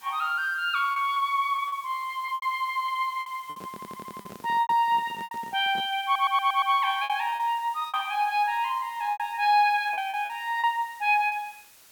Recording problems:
hiss; slope +1 dB per octave, SNR 25 dB
lost packets; 10% of the sound replaced, filled with repeated pitch periods
handling noise; from 3.5 to 6 s; peak -12 dB vs average level
audio stuttering; at 3.5 s and at 6 s

